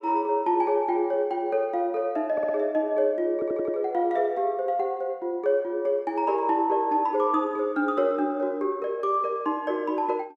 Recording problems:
audio stuttering; at 2.5 s and at 3.5 s

